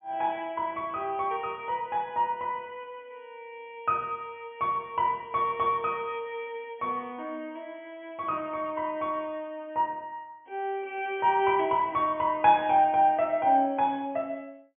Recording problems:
low-pass filter; nothing above 3.4 kHz

